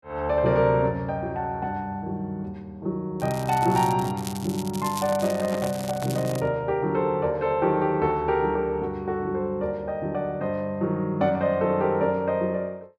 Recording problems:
crackling; from 3 to 6.5 s; loose cable, SNR 14 dB
microphone handling noise; from 5 to 6.5 s; peak -3 dB vs average level

